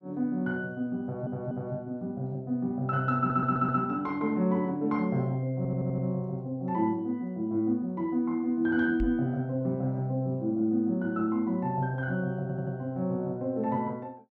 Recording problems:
audio stuttering; 4 times, first at 1 s
microphone thump; at 9 s; peak -1 dB vs average level

